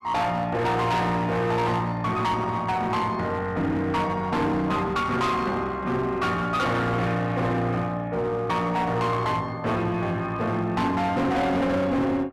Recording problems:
distortion; hard clipping, uneven, signal-to-distortion ratio 7 dB

